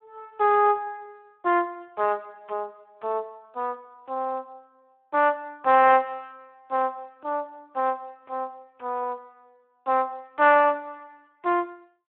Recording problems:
phone line; 300 Hz to 3.5 kHz, Speex

